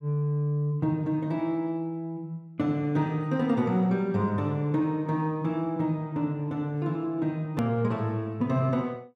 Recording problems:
click at an edit; at 7.5 s

